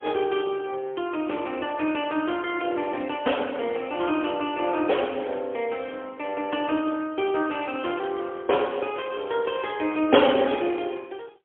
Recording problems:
telephone audio; 260 Hz to 3.4 kHz, AMR-NB, then MP3

